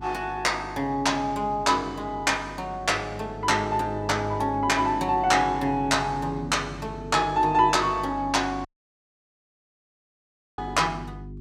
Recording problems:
hum; 50 Hz, harmonics up to 400 Hz, SNR 17 dB
dropout; at 8.5 s for 2 s

